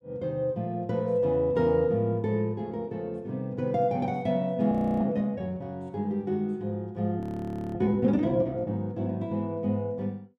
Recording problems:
frozen audio; at 4.5 s and at 7 s for 0.5 s

